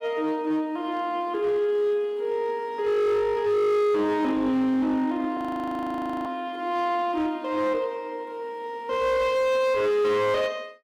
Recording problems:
distortion; hard clipping, signal-to-distortion ratio 11 dB
audio freezing; at 5.5 s for 1 s

